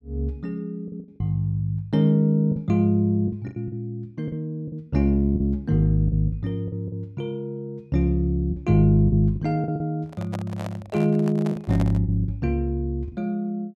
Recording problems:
lost packets; 8% of the sound replaced, filled with the last packet
microphone handling noise; from 10 to 12 s; peak -6 dB vs average level

